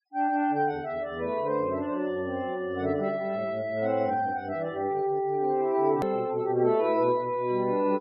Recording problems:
treble cut off; nothing above 5.5 kHz
noise reduction artefacts; signal-to-artefact ratio 25 dB
edit click; at 6 s

